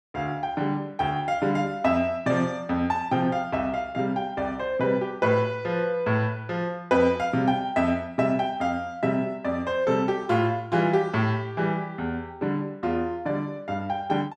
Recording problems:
none

